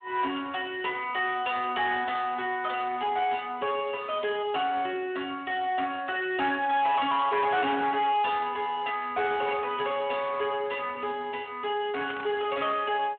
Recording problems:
phone line; 300 Hz to 3.4 kHz, Speex
distorted audio; soft clipping, signal-to-distortion ratio 11 dB
static burst; at 12 s; peak -10 dB vs average level

